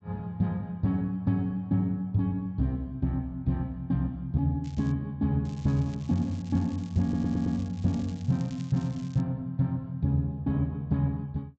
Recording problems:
treble missing; nothing above 8 kHz
crackle; at 4.5 s and from 5.5 to 9 s; loose cable, SNR 25 dB
audio stuttering; at 7 s

